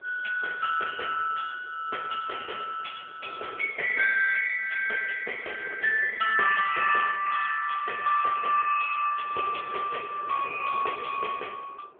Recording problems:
phone line; 730 Hz to 3.3 kHz, AMR-NB
wind noise; below 770 Hz, SNR 20 dB

